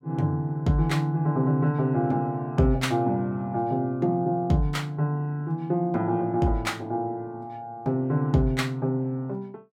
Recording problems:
none

